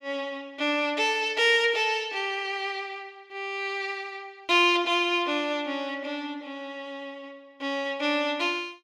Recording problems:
none

